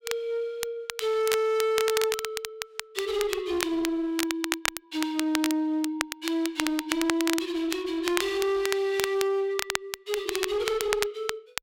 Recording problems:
distorted audio; hard clipping, uneven, signal-to-distortion ratio 11 dB
crackle; vinyl, SNR 5 dB

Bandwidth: 16 kHz